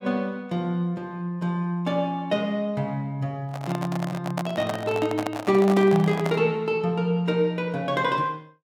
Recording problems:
handling noise; from 3.5 to 6.5 s; peak -1 dB vs average level

